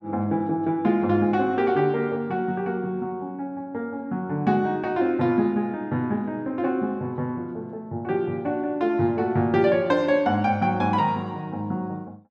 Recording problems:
none

